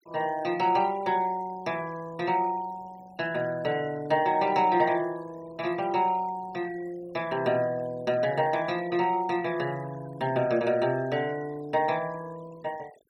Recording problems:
denoising artefacts; signal-to-artefact ratio 22 dB

